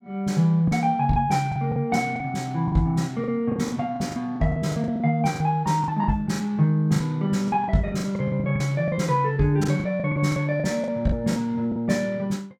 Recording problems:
lost packets; 13% of the sound replaced, filled with the last packet

